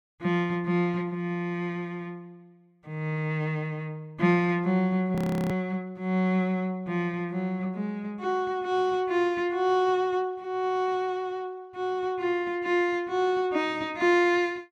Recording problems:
frozen audio; at 5 s

